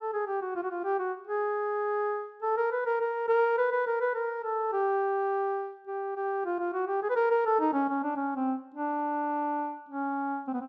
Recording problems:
none

